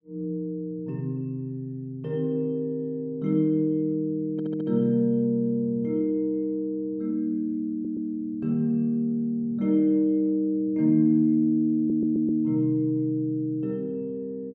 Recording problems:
audio stuttering; at 4.5 s, at 7.5 s and at 12 s

